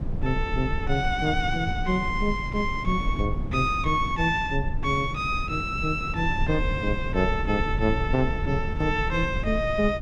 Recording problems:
low-frequency rumble; below 110 Hz, SNR 6 dB

